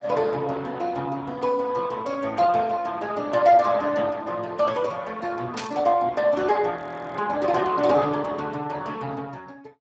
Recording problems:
lossy compression; Speex, log-spectral distance 4 dB
burst of static; at 5.5 s; peak -5 dB vs average level
frozen audio; at 7 s

